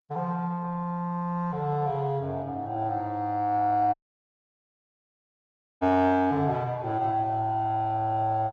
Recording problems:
lossy compression; Opus, log-spectral distance 2 dB
dropout; at 4 s for 2 s

